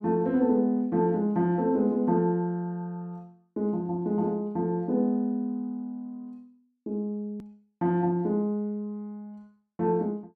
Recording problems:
edit click; at 7.5 s

